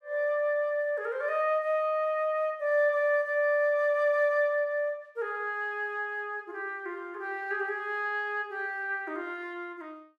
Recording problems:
none

